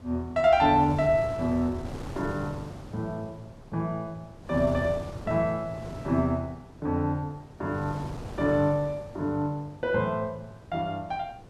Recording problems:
wind on the microphone; below 490 Hz, SNR 14 dB

